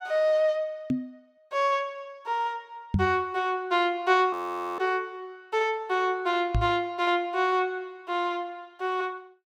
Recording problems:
microphone bump; at 1 s, at 3 s and at 6.5 s; peak +5 dB vs average level
frozen audio; at 4.5 s

